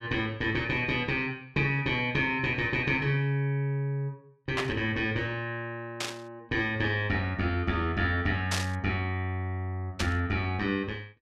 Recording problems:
burst of static; 4 times, first at 4.5 s; peak +2 dB vs average level

